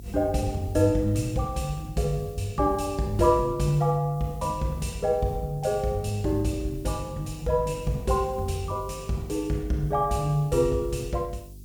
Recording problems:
hum; 50 Hz, harmonics up to 400 Hz, SNR 19 dB
hiss; SNR 27 dB

